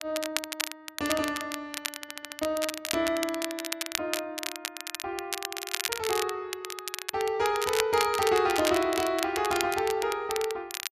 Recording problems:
crackle; vinyl, SNR 5 dB
stutter; at 2 s

